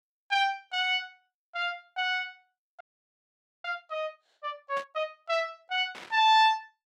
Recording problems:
frozen audio; at 3 s for 1 s
static burst; at 5 s and at 6 s; peak -12 dB vs average level

